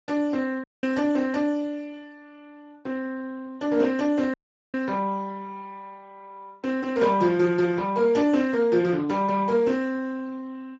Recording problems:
lossy codec; Speex, log-spectral distance 3 dB, nothing above 7.3 kHz
audio cutting out; at 0.5 s and at 4.5 s

